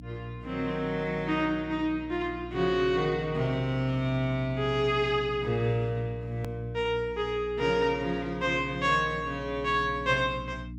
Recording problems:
hum; 60 Hz, harmonics up to 300 Hz, SNR 14 dB
edit click; at 6.5 s

